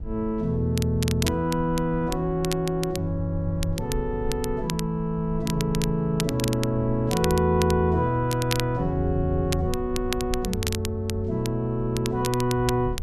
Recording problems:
rumble; below 90 Hz, SNR 12 dB
crackle; vinyl, SNR 10 dB

